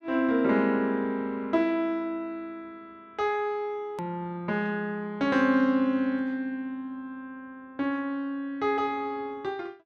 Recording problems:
edit click; at 4 s

